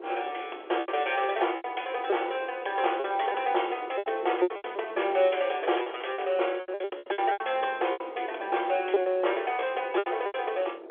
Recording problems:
telephone audio; 300 Hz to 3.5 kHz, G.711
wind on the microphone; below 560 Hz, SNR 11 dB
packet loss; 13% of the sound replaced, filled with repeated pitch periods

